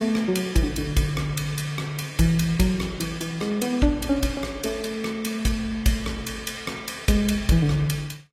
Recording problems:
lossy codec; AAC, log-spectral distance 4 dB, nothing above 14.7 kHz

